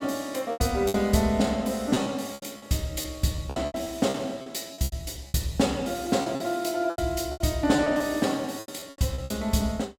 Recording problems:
packet loss; 14% of the sound replaced, filled with repeated pitch periods

